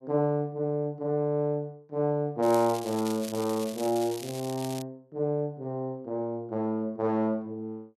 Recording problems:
crackling; from 2.5 to 5 s; loose cable, SNR 13 dB

